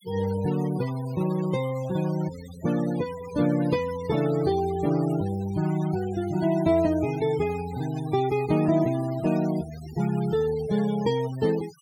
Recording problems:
denoising artefacts; signal-to-artefact ratio 16 dB

